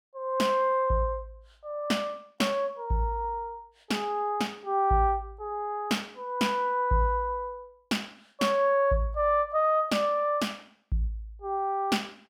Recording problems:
none

